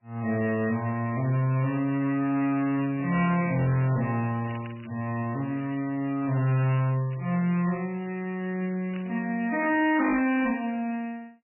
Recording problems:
codec artefacts; MP3, log-spectral distance 4 dB, nothing above 2.6 kHz
distorted audio; hard clipping, signal-to-distortion ratio 10 dB
crackling; from 4.5 to 9.5 s; loose cable, SNR 25 dB

